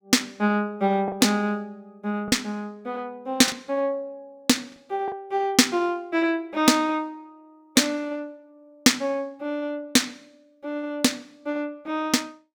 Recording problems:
packet loss; 1.6% of the sound replaced, filled with the last packet

